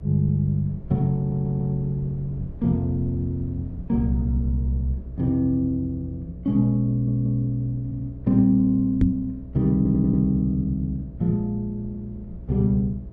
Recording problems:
mains hum; 60 Hz, harmonics up to 660 Hz, SNR 18 dB
low-frequency rumble; below 94 Hz, SNR 20 dB
stutter; 4 times, first at 1 s
knock on the microphone; at 9 s; peak +7 dB vs average level

